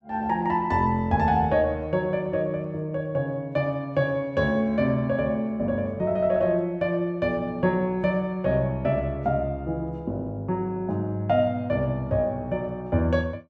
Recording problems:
none

